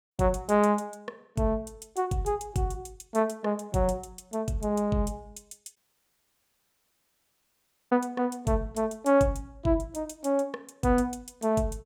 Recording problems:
dropout; at 6 s for 2 s

